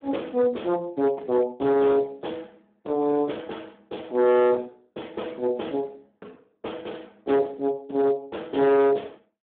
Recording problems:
telephone audio; 240 Hz to 3.1 kHz, Speex
distortion; hard clipping, signal-to-distortion ratio 11 dB

